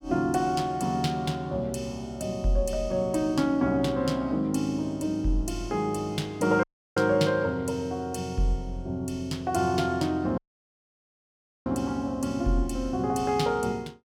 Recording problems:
audio cutting out; at 6.5 s and at 10 s for 1.5 s

